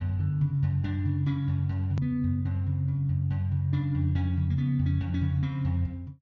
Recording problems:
low-pass filter; nothing above 7.2 kHz
click at an edit; at 2 s

